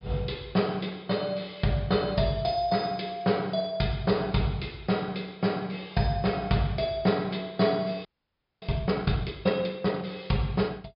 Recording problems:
treble missing; nothing above 5.5 kHz
frozen audio; at 8 s for 0.5 s

